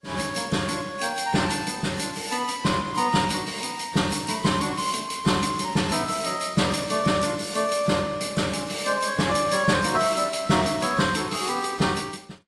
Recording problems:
lossy codec; AAC, log-spectral distance 5 dB

